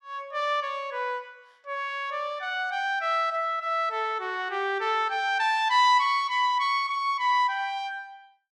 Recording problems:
none

